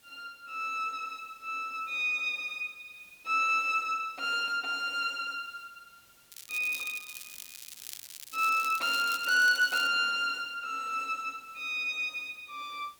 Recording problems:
background hiss; slope -1 dB per octave, SNR 29 dB
crackling; from 6.5 to 10 s; loose cable, SNR 13 dB

